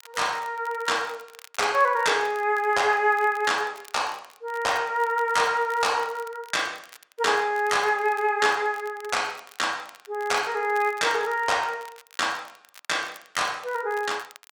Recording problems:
crackle; vinyl, SNR 24 dB

